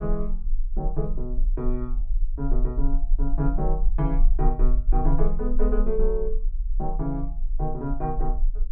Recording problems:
rumble; below 36 Hz, strongest tone 18 Hz, SNR -2 dB

